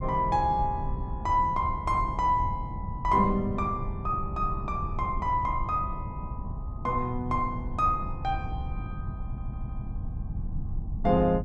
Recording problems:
rumble; below 120 Hz, SNR 7 dB
audio stuttering; at 9 s

